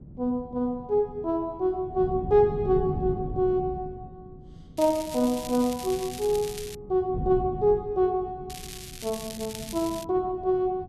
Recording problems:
wind noise; below 200 Hz, SNR 13 dB
crackle; from 5 to 7 s and from 8.5 to 10 s; loose cable, SNR 13 dB

